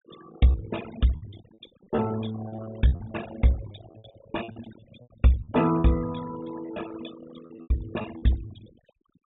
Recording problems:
treble missing; nothing above 3.7 kHz
noise reduction artefacts; signal-to-artefact ratio 15 dB
packet loss; 13% of the sound replaced, filled with repeated pitch periods

